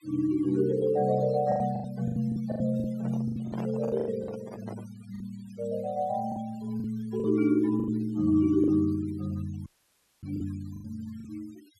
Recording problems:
noise reduction artefacts; signal-to-artefact ratio 24 dB
packet loss; 10% of the sound replaced, filled with the last packet
handling noise; from 3 to 5 s; peak -7 dB vs average level
dropout; at 9.5 s for 0.5 s

